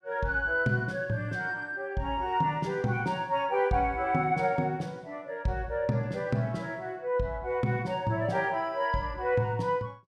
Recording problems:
none

